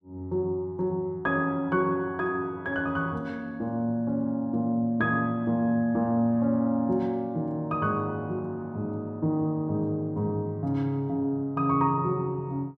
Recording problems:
none

